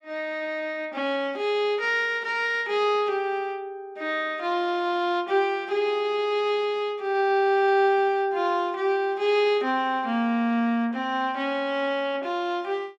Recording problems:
none

